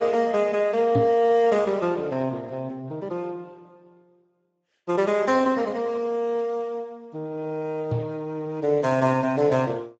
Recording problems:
codec artefacts; Speex, log-spectral distance 2 dB, nothing above 7.6 kHz
microphone bump; at 1 s and at 8 s; peak +3 dB vs average level

